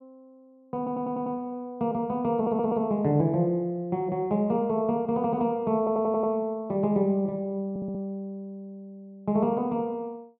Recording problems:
audio stuttering; 4 times, first at 1 s

